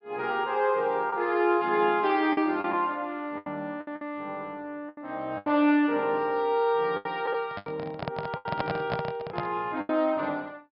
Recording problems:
treble cut off; nothing above 5.5 kHz
lost packets; 8% of the sound replaced, filled with the last packet
microphone handling noise; from 7.5 to 9.5 s; peak +1 dB vs average level

